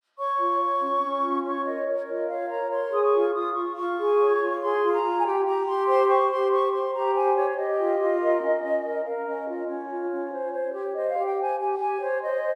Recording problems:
none

